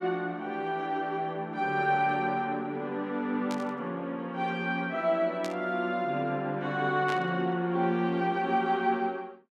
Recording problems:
burst of static; at 3.5 s, at 5.5 s and at 7 s; peak -6 dB vs average level

